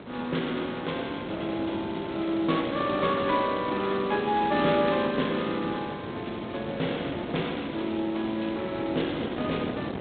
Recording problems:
telephone audio; 170 Hz to 4 kHz, G.726
wind noise; below 640 Hz, SNR 8 dB

